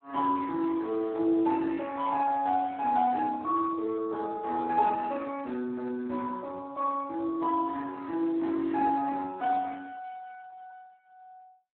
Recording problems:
telephone audio; 220 Hz to 2.2 kHz, Speex

